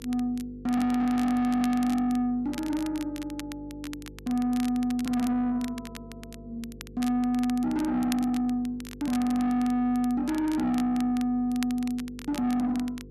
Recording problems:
distorted audio; soft clipping, signal-to-distortion ratio 8 dB
hum; 50 Hz, harmonics up to 500 Hz, SNR 20 dB
crackle; vinyl, SNR 18 dB

